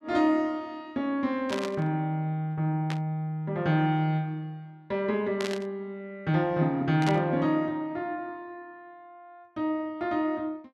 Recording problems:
static burst; 4 times, first at 1.5 s; peak -2 dB vs average level

